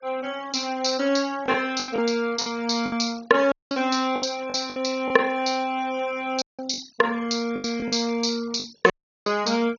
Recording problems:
treble missing; nothing above 6.8 kHz
denoising artefacts; signal-to-artefact ratio 21 dB
lost packets; 8% of the sound replaced, filled with the last packet
dropout; at 3.5 s, at 6.5 s and at 9 s

